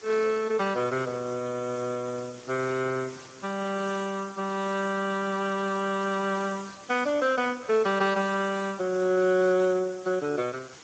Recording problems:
lossy compression; Speex, log-spectral distance 9 dB, nothing above 7.3 kHz
background hiss; slope -2 dB per octave, SNR 20 dB

